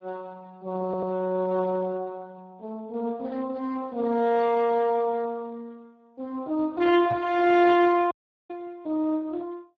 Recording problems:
lossy codec; Speex, log-spectral distance 2 dB
stutter; at 1 s
microphone thump; at 7 s; peak -8 dB vs average level
dropout; at 8 s

